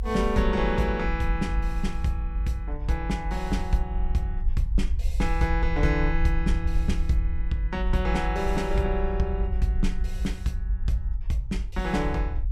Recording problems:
low-frequency rumble; below 52 Hz, SNR 1 dB

